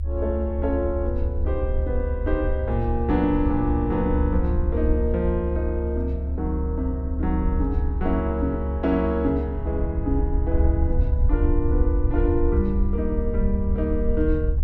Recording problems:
low-frequency rumble; below 72 Hz, SNR 0 dB

